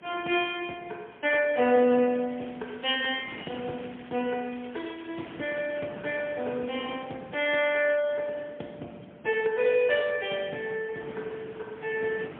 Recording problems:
phone line; 220 Hz to 3.4 kHz, AMR-NB, then MP3
wind on the microphone; below 1.4 kHz, SNR 20 dB
crackling; from 1.5 to 6 s; loose cable, SNR 22 dB

